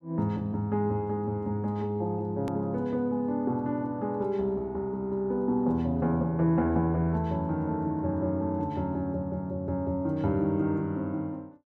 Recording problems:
click at an edit; at 2.5 s

